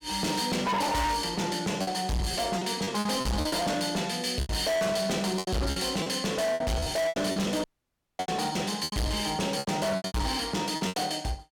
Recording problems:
distortion; hard clipping, signal-to-distortion ratio 6 dB
packet loss; 13% of the sound replaced, filled with repeated pitch periods
dropout; at 7.5 s for 0.5 s

